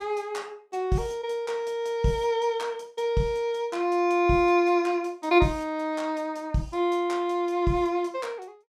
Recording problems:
none

